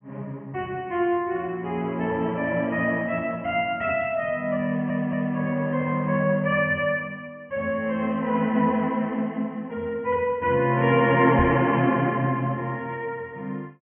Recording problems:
low-pass filter; nothing above 3.2 kHz
audio stuttering; at 4.5 s
microphone thump; at 11 s; peak +1 dB vs average level

